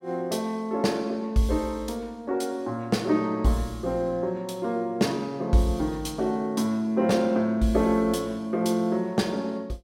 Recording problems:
none

